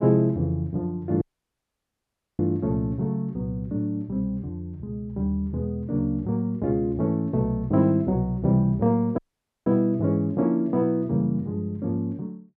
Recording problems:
dropout; at 1 s for 1 s and at 9 s

